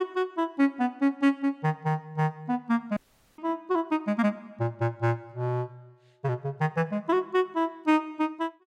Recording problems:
dropout; at 3 s

